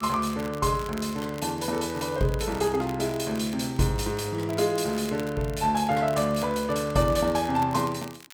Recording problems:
crackle; vinyl, SNR 20 dB

